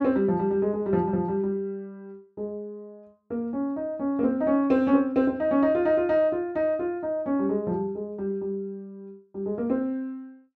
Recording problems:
none

